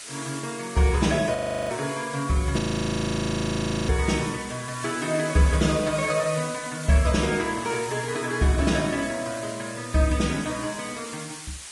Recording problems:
lossy compression; Vorbis, log-spectral distance 13 dB
background hiss; slope +2 dB per octave, SNR 13 dB
audio freezing; at 1.5 s and at 2.5 s for 1.5 s

